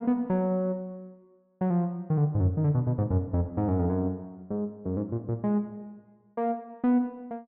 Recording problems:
none

